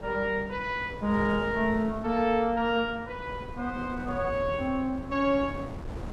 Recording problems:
wind noise; below 420 Hz, SNR 12 dB

